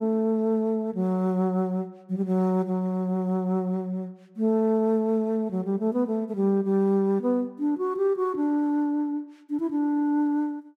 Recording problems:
none

